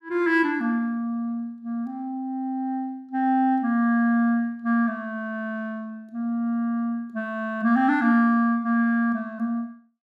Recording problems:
none

